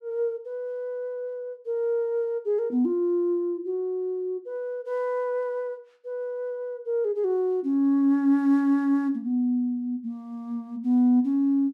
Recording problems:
none

